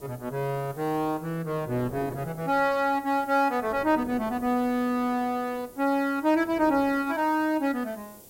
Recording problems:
background hiss; SNR 25 dB
wind on the microphone; below 550 Hz, SNR 21 dB

